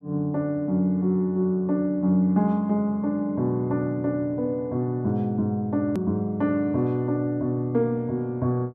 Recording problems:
edit click; at 6 s

